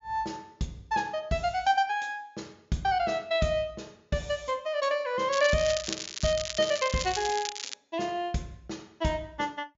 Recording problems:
treble cut off; nothing above 7.1 kHz
crackling; from 5.5 to 7.5 s; loose cable, SNR 6 dB

